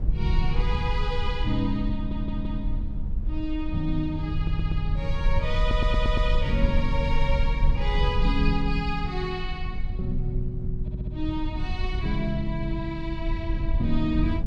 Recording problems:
rumble; below 60 Hz, SNR 0 dB
stutter; 4 times, first at 2 s

